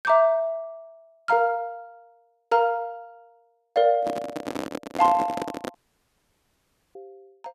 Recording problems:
microphone handling noise; from 4 to 6 s; peak -3 dB vs average level
audio cutting out; at 6 s for 1 s

